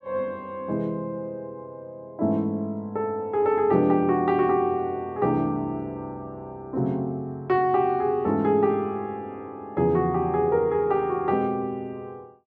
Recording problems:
none

